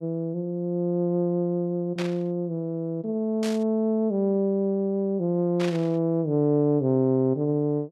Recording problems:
burst of static; at 2 s, at 3.5 s and at 5.5 s; peak -6 dB vs average level

